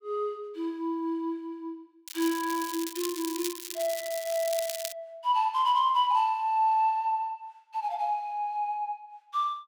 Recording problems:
crackle; from 2 to 5 s; loose cable, SNR 8 dB

